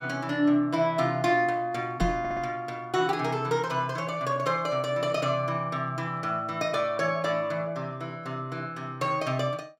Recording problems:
microphone bump; at 2 s; peak +3 dB vs average level
audio stuttering; at 2 s

